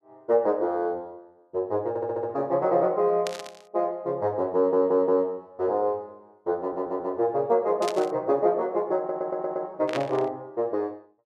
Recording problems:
stutter; 4 times, first at 2 s
static burst; at 3.5 s, at 8 s and at 10 s; peak -3 dB vs average level

